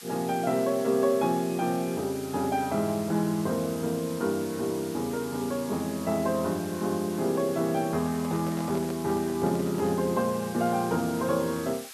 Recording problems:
background hiss; SNR 15 dB
handling noise; from 8 to 10 s; peak -8 dB vs average level

